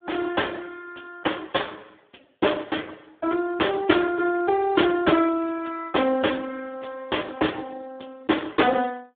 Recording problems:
telephone audio; 240 Hz to 3.5 kHz, Speex

